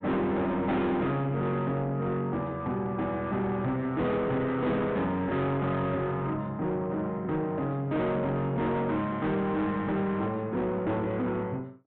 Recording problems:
treble missing; nothing above 4 kHz
distortion; soft clipping, signal-to-distortion ratio 7 dB

